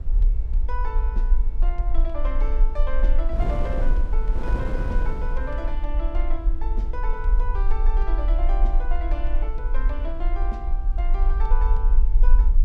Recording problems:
low-frequency rumble; below 40 Hz, SNR -10 dB
wind noise; below 240 Hz, SNR 4 dB

